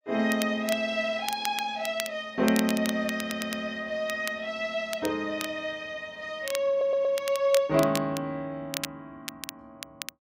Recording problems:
crackling; vinyl, SNR 10 dB
audio stuttering; at 3 s and at 6.5 s

